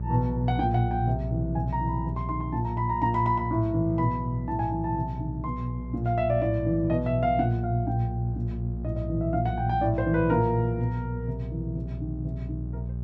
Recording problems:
hum; 60 Hz, harmonics up to 420 Hz, SNR 6 dB

